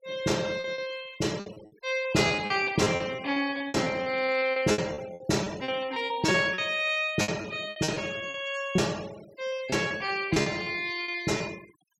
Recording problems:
noise reduction artefacts; signal-to-artefact ratio 19 dB
lost packets; 15% of the sound replaced, filled with repeated pitch periods

